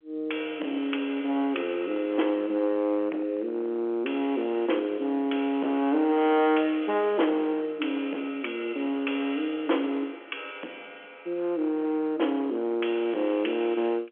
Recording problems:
phone line; 240 Hz to 3.4 kHz, G.711
distorted audio; hard clipping, uneven, signal-to-distortion ratio 10 dB

